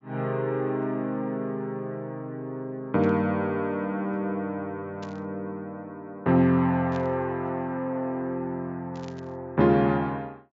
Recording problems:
treble missing; nothing above 7.3 kHz
static burst; 4 times, first at 3 s; peak -14 dB vs average level

